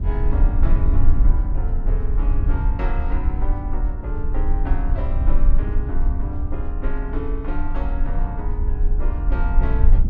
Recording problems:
rumble; below 50 Hz, strongest tone 18 Hz, SNR -10 dB

